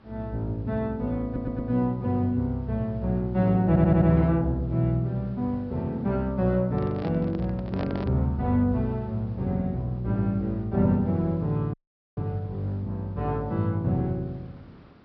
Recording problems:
low-pass filter; nothing above 5.5 kHz
background hiss; SNR 27 dB
stutter; at 1.5 s and at 3.5 s
handling noise; from 6.5 to 8 s; peak -5 dB vs average level
audio cutting out; at 12 s

